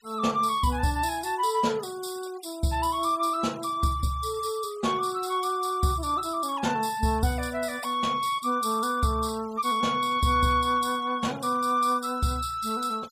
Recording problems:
noise reduction artefacts; signal-to-artefact ratio 22 dB

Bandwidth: 15 kHz